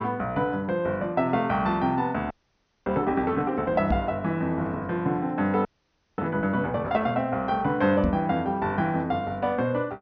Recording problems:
low-pass filter; nothing above 6.3 kHz
audio freezing; at 2.5 s for 0.5 s and at 5.5 s for 0.5 s
microphone thump; at 4 s and at 8 s; peak +4 dB vs average level

